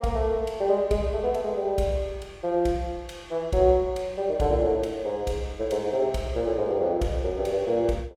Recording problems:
none

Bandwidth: 17 kHz